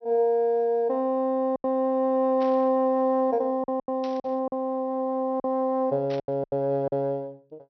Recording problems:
treble cut off; nothing above 5.9 kHz
lost packets; 7% of the sound replaced, filled with silence
burst of static; at 2.5 s, at 4 s and at 6 s; peak -13 dB vs average level

